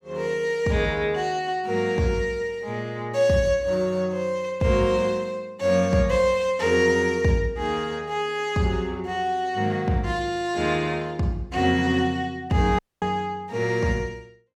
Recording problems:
dropout; at 13 s

